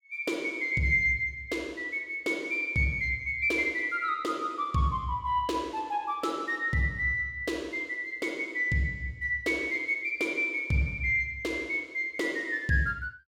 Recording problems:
none

